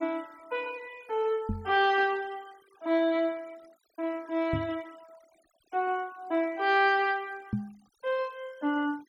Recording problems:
denoising artefacts; signal-to-artefact ratio 27 dB
knock on the microphone; at 1.5 s, at 4.5 s and at 7.5 s; peak +2 dB vs average level

